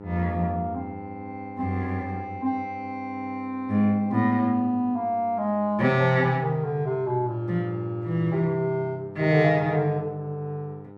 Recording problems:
hum; 50 Hz, harmonics up to 1.4 kHz, SNR 16 dB

